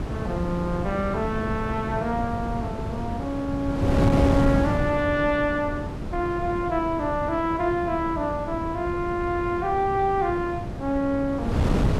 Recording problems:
wind on the microphone; below 340 Hz, SNR 4 dB

